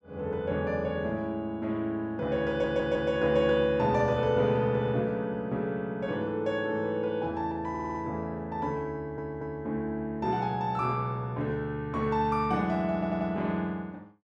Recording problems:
stutter; 4 times, first at 2.5 s

